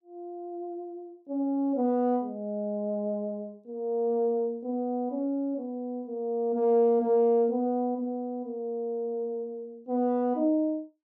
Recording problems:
none

